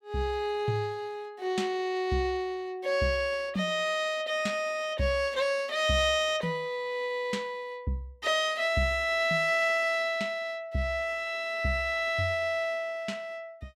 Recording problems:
none

